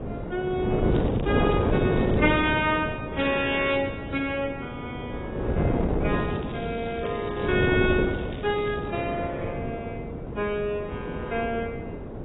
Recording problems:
lossy compression; AAC, log-spectral distance 4 dB, nothing above 3.4 kHz
wind on the microphone; below 470 Hz, SNR 1 dB
crackle; from 1 to 2.5 s and from 6 to 9 s; loose cable, SNR 19 dB

